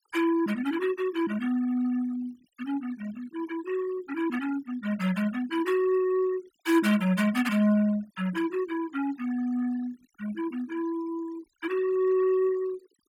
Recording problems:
denoising artefacts; signal-to-artefact ratio 20 dB

